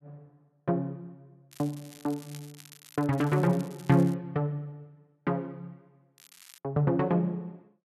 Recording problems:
crackle; from 1.5 to 4 s and at 6 s; loose cable, SNR 22 dB

